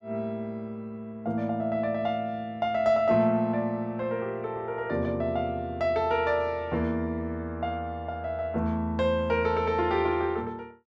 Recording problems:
none

